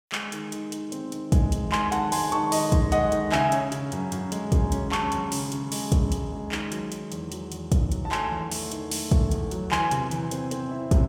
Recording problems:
none

